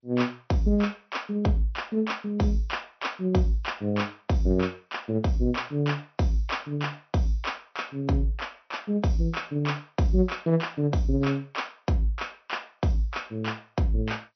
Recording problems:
low-pass filter; nothing above 6 kHz
lossy compression; MP3, then G.722, log-spectral distance 3 dB

